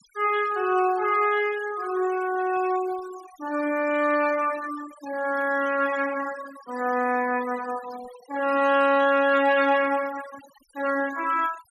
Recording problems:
denoising artefacts; signal-to-artefact ratio 18 dB

